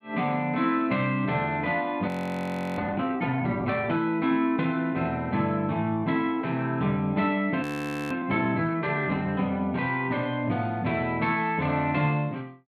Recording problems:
audio freezing; at 2 s for 0.5 s and at 7.5 s

